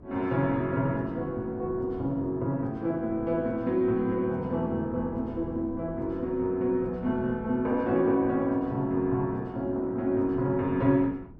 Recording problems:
wind on the microphone; below 280 Hz, SNR 19 dB

